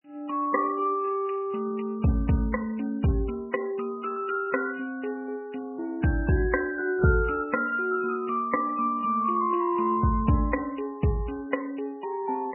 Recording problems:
lossy compression; MP3, log-spectral distance 4 dB, nothing above 2.9 kHz

